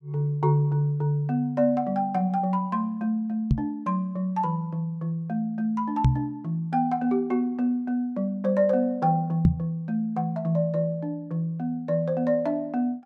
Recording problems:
knock on the microphone; at 3.5 s, at 6 s and at 9.5 s; peak +9 dB vs average level

